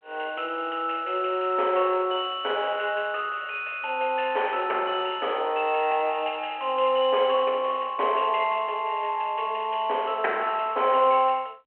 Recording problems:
telephone audio; 320 Hz to 3.2 kHz, G.726

